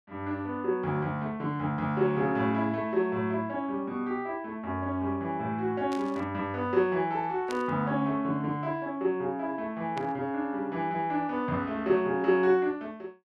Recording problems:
static burst; at 6 s, at 7.5 s and at 10 s; peak -7 dB vs average level

